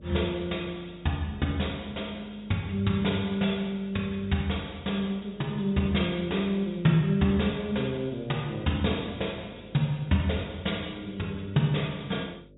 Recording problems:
treble cut off; nothing above 4 kHz
hum; 50 Hz, harmonics up to 600 Hz, SNR 24 dB

